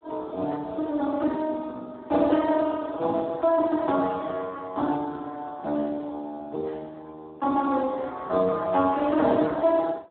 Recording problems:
phone line; 240 Hz to 2.8 kHz, Speex

